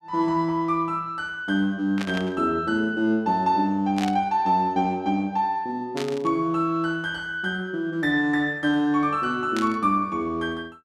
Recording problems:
burst of static; 4 times, first at 2 s; peak -5 dB vs average level

